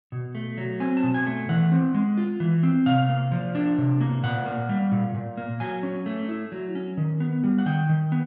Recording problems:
none

